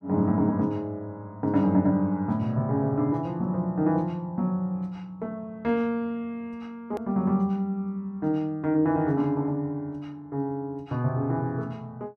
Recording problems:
click at an edit; at 7 s

